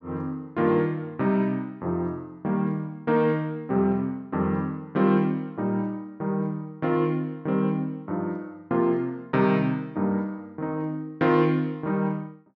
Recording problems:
low-pass filter; nothing above 7.5 kHz

